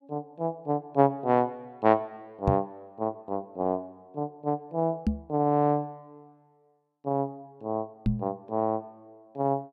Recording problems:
microphone bump; at 2.5 s, at 5 s and at 8 s; peak +7 dB vs average level

